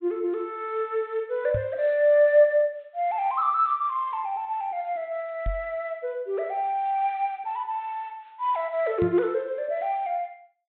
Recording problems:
treble missing; nothing above 4 kHz
knock on the microphone; at 1.5 s, at 5.5 s and at 9 s; peak -1 dB vs average level

